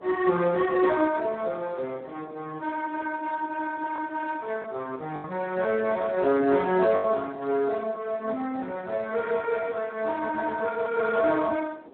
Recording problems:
phone line; 220 Hz to 3.7 kHz, Speex
wind on the microphone; below 640 Hz, SNR 23 dB
packet loss; 1.7% of the sound replaced, filled with the last packet

